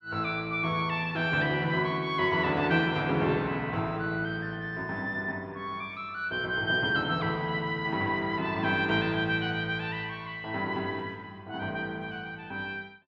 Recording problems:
none

